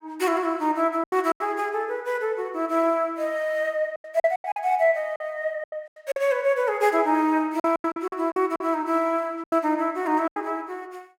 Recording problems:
lost packets; 9% of the sound replaced, filled with silence

